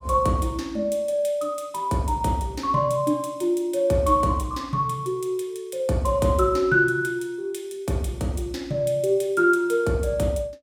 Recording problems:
none

